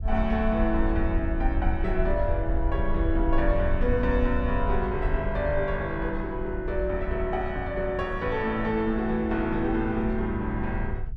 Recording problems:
rumble; below 62 Hz, SNR 4 dB

